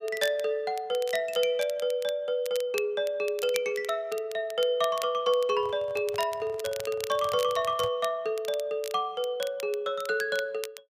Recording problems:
crackling; vinyl, SNR 15 dB
microphone handling noise; from 5.5 to 8 s; peak -7 dB vs average level

